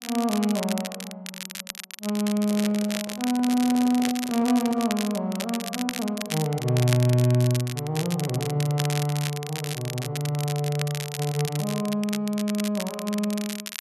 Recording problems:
crackling; vinyl, SNR 9 dB
handling noise; from 2.5 to 5 s; peak -11 dB vs average level

